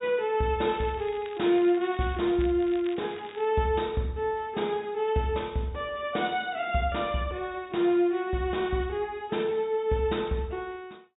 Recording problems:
treble missing; nothing above 4 kHz
crackling; from 0.5 to 3.5 s; loose cable, SNR 21 dB

